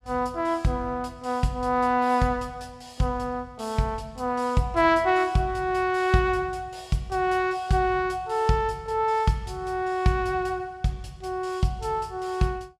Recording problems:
none

